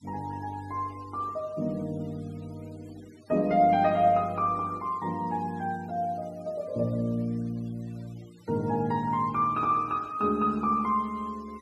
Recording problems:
noise reduction artefacts; signal-to-artefact ratio 27 dB

